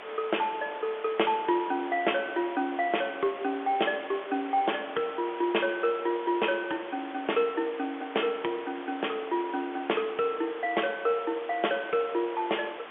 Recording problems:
phone line; 280 Hz to 3.5 kHz, G.711
hiss; SNR 13 dB

